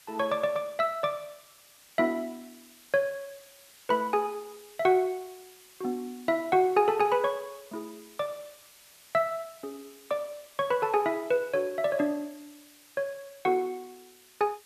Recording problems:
background hiss; slope +1 dB per octave, SNR 24 dB

